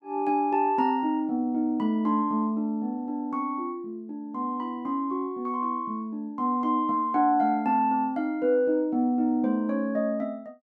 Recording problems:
none

